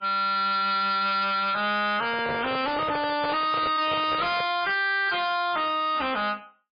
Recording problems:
codec artefacts; MP3, log-spectral distance 5 dB, nothing above 4.1 kHz
distortion; hard clipping, signal-to-distortion ratio 6 dB
microphone handling noise; from 2 to 4.5 s; peak -3 dB vs average level

